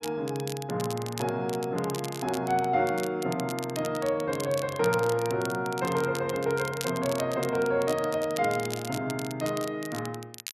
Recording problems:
crackling; vinyl, SNR 12 dB

